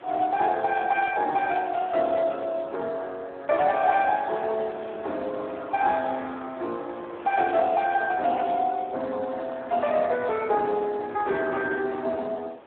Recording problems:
phone line; 260 Hz to 3.7 kHz, Speex
wind on the microphone; below 1.2 kHz, SNR 18 dB

